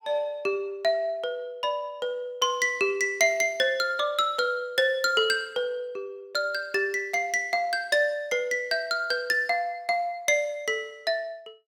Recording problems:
none

